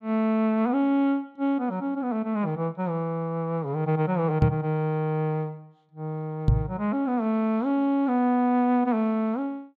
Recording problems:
knock on the microphone; at 4.5 s and at 6.5 s; peak +8 dB vs average level

